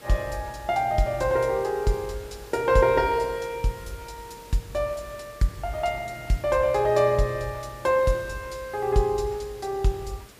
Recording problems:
hiss; slope -4 dB per octave, SNR 22 dB

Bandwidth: 15 kHz